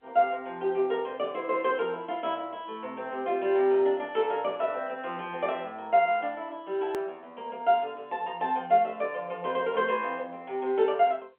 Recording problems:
telephone audio; 340 Hz to 3.5 kHz, G.711
click at an edit; at 7 s

